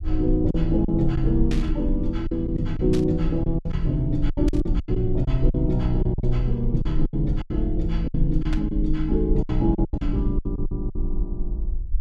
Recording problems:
rumble; below 48 Hz, SNR 4 dB
lost packets; 11% of the sound replaced, filled with silence
burst of static; 4 times, first at 1.5 s; peak -6 dB vs average level

